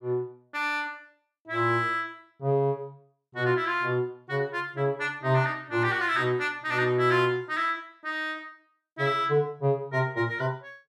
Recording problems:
none

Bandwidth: 14 kHz